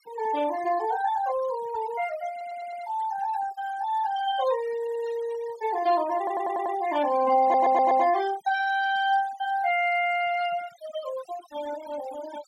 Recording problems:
noise reduction artefacts; signal-to-artefact ratio 17 dB
audio stuttering; 4 times, first at 2.5 s

